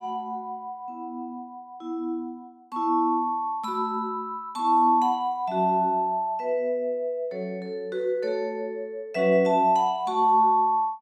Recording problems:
none

